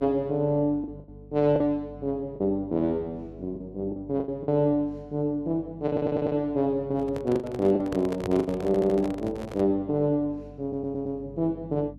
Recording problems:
hum; 50 Hz, harmonics up to 300 Hz, SNR 20 dB
lost packets; 6% of the sound replaced, filled with the last packet
stutter; at 6 s, at 8.5 s and at 11 s
handling noise; from 7 to 9.5 s; peak -3 dB vs average level

